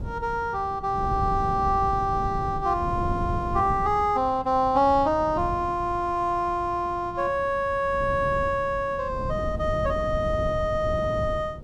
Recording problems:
wind on the microphone; below 190 Hz, SNR 10 dB

